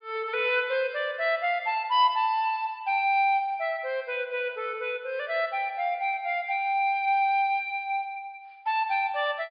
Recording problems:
low-pass filter; nothing above 5.1 kHz

